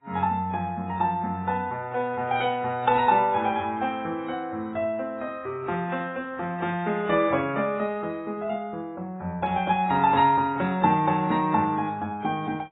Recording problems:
lossy codec; AAC, then AAC, log-spectral distance 2 dB, nothing above 3.2 kHz

